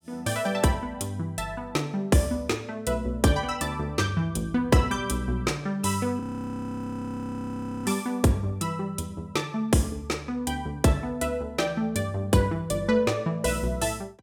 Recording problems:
audio freezing; at 6 s for 1.5 s

